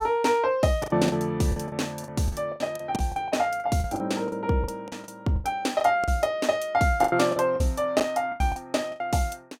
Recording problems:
packet loss; 14% of the sound replaced, filled with the last packet

